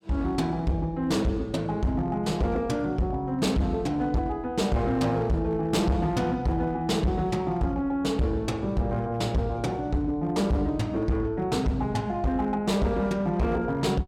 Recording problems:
distorted audio; hard clipping, uneven, signal-to-distortion ratio 8 dB

